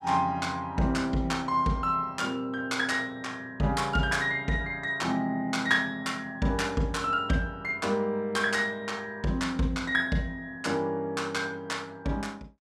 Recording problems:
none

